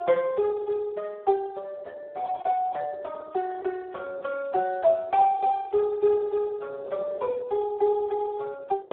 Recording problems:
phone line; 320 Hz to 2.1 kHz, Speex
wind noise; below 590 Hz, SNR 21 dB

